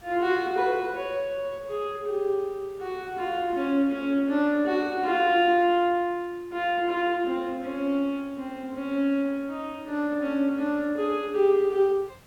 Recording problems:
hiss; slope -4 dB per octave, SNR 28 dB

